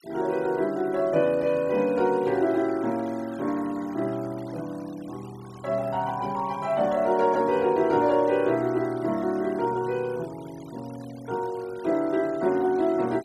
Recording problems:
denoising artefacts; signal-to-artefact ratio 23 dB

